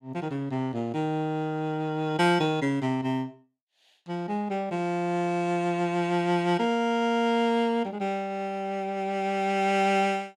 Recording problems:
none

